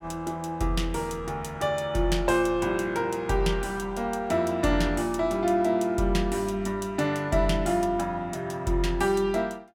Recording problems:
none

